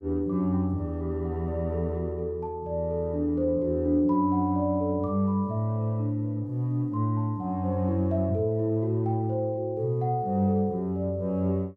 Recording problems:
none

